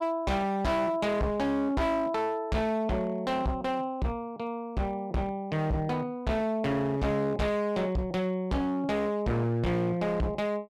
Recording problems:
distorted audio; hard clipping, uneven, signal-to-distortion ratio 7 dB

